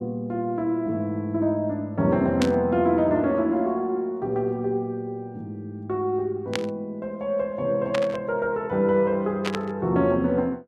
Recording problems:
static burst; 4 times, first at 2.5 s; peak +1 dB vs average level

